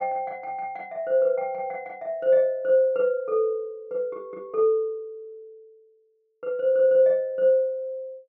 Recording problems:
low-pass filter; nothing above 6.5 kHz

